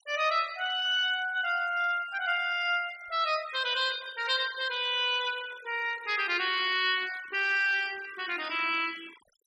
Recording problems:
denoising artefacts; signal-to-artefact ratio 18 dB

